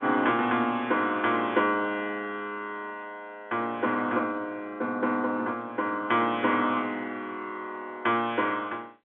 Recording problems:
phone line; 220 Hz to 3.6 kHz, G.711

